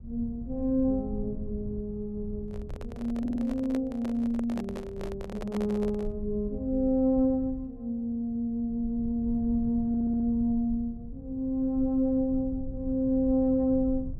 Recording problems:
low-frequency rumble; below 100 Hz, SNR 13 dB
microphone handling noise; from 2.5 to 6 s; peak -6 dB vs average level
audio stuttering; at 3 s and at 10 s

